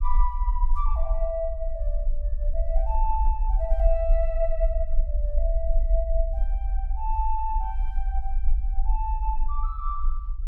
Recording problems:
low-frequency rumble; below 44 Hz, SNR -4 dB

